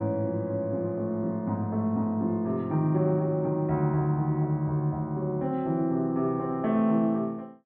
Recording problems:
treble missing; nothing above 4 kHz

